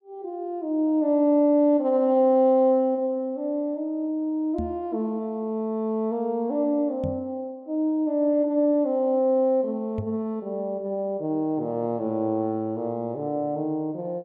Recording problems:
microphone bump; at 4.5 s, at 7 s and at 10 s; peak -3 dB vs average level

